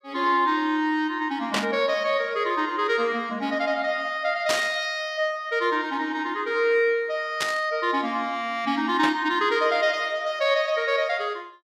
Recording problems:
static burst; 4 times, first at 1.5 s; peak +3 dB vs average level

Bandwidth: 15.5 kHz